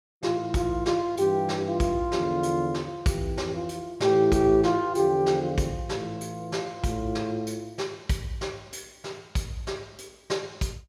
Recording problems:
none

